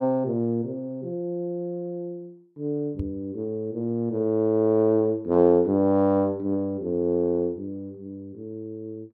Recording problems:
microphone bump; at 3 s; peak -3 dB vs average level

